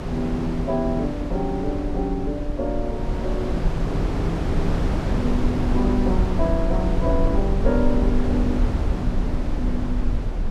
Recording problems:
low-frequency rumble; below 54 Hz, SNR 2 dB
wind on the microphone; below 430 Hz, SNR 2 dB

